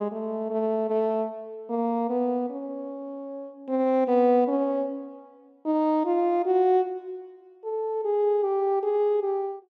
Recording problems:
none

